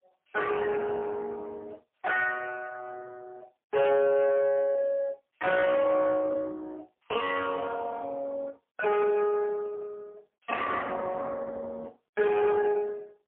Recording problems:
phone line; 280 Hz to 2.8 kHz, AMR-NB, then MP3
distorted audio; soft clipping, signal-to-distortion ratio 12 dB

